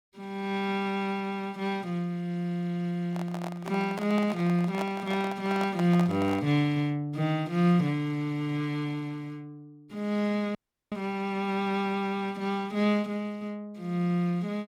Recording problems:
handling noise; from 3 to 6.5 s; peak -3 dB vs average level
dropout; at 11 s

